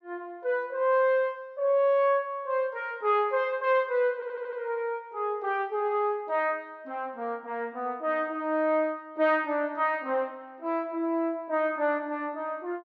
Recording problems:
audio stuttering; at 4 s

